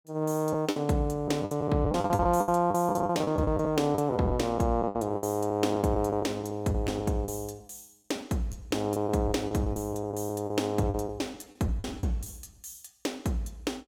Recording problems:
lost packets; 13% of the sound replaced, filled with the last packet

